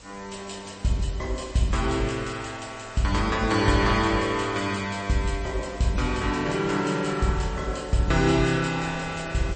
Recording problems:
lossy codec; MP3, log-spectral distance 9 dB, nothing above 8.2 kHz
background hiss; slope +2 dB per octave, SNR 24 dB
wind on the microphone; below 1.3 kHz, SNR 23 dB

